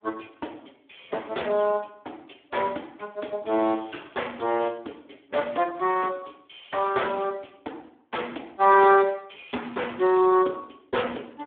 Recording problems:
phone line; 280 Hz to 3.5 kHz, Speex

